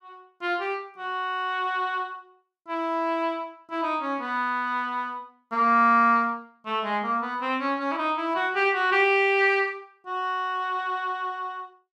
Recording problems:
none

